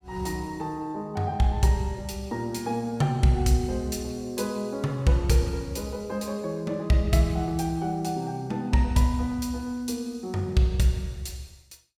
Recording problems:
none

